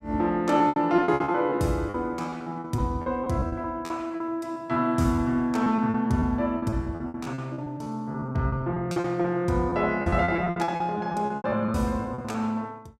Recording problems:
lost packets; 18% of the sound replaced, filled with repeated pitch periods

